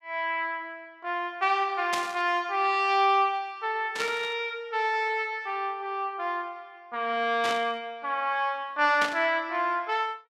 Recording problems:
static burst; 4 times, first at 2 s; peak 0 dB vs average level

